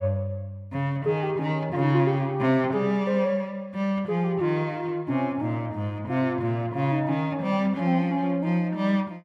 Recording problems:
none

